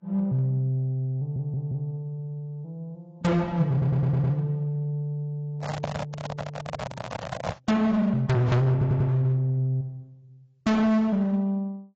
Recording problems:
lossy codec; AAC, then AAC, log-spectral distance 2 dB, nothing above 7.6 kHz
distorted audio; hard clipping, signal-to-distortion ratio 6 dB
stutter; at 1 s, at 3.5 s and at 8.5 s
microphone handling noise; from 5.5 to 7.5 s; peak -1 dB vs average level

